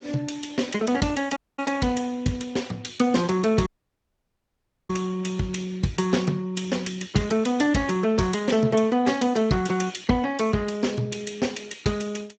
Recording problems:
lossy codec; Speex, log-spectral distance 5 dB, nothing above 7.8 kHz
dropout; at 1.5 s and at 3.5 s for 1 s

